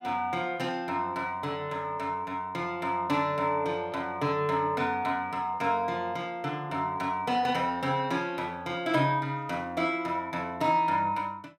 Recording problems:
none

